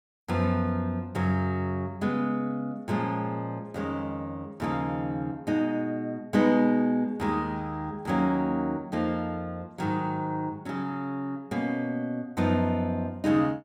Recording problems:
none

